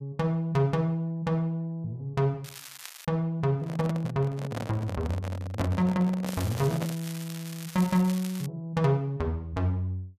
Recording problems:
crackling; at 2.5 s and from 6.5 to 8.5 s; loose cable, SNR 14 dB
handling noise; from 3.5 to 7 s; peak 0 dB vs average level

